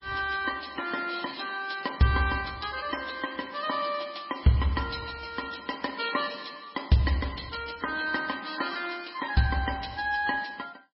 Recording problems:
lossy compression; MP3, log-spectral distance 8 dB, nothing above 5 kHz

